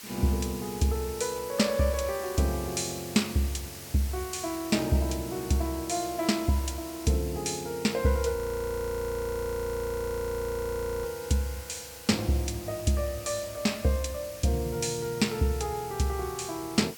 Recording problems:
hiss; slope +1 dB per octave, SNR 13 dB
audio freezing; at 8.5 s for 2.5 s

